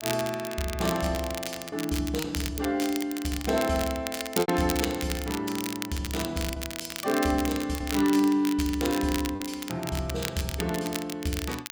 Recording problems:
crackle; vinyl, SNR 7 dB
packet loss; 3% of the sound replaced, filled with repeated pitch periods

